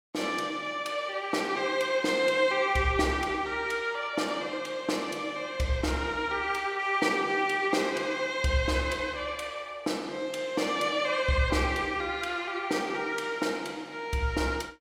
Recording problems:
none

